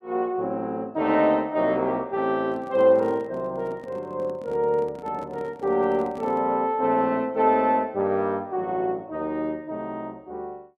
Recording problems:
handling noise; from 2.5 to 6.5 s; peak -11 dB vs average level

